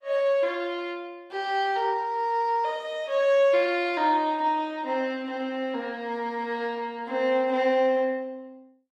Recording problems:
lossy codec; Opus, log-spectral distance 2 dB

